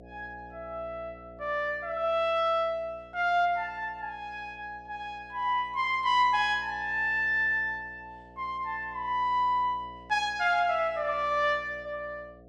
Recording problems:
hum; 60 Hz, harmonics up to 720 Hz, SNR 23 dB

